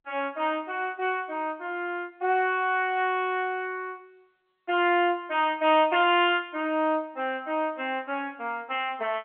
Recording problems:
phone line; 220 Hz to 3.3 kHz, G.711

